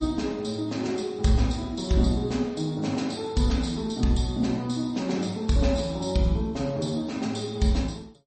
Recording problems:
lossy codec; MP3, log-spectral distance 4 dB, nothing above 8.2 kHz

